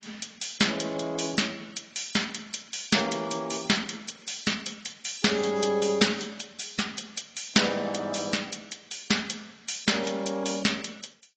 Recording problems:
lossy codec; AAC, log-spectral distance 7 dB, nothing above 7.3 kHz

